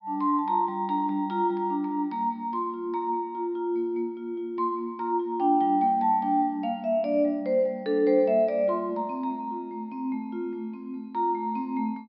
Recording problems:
low-pass filter; nothing above 5.4 kHz

